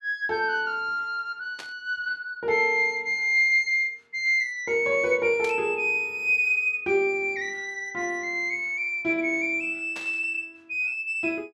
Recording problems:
static burst; at 1.5 s, at 5.5 s and at 10 s; peak -10 dB vs average level

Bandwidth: 12.5 kHz